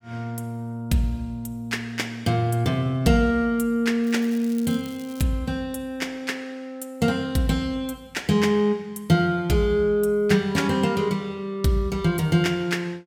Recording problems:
crackle; from 4 to 5 s; loose cable, SNR 22 dB

